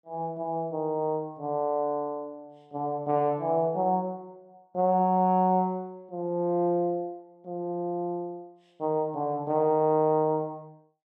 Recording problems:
none

